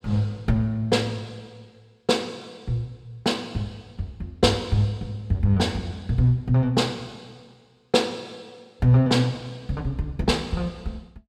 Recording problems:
none

